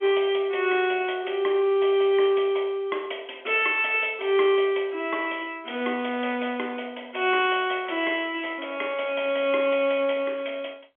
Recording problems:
telephone audio; 260 Hz to 3.4 kHz, G.711

